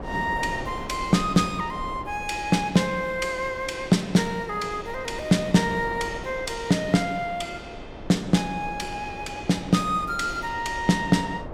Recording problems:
wind noise; below 630 Hz, SNR 13 dB

